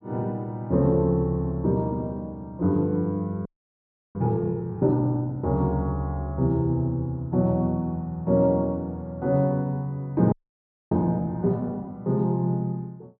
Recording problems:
frozen audio; at 3.5 s for 0.5 s and at 10 s for 0.5 s

